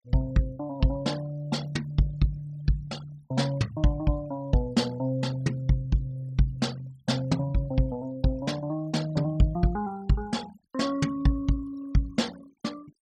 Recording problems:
denoising artefacts; signal-to-artefact ratio 21 dB

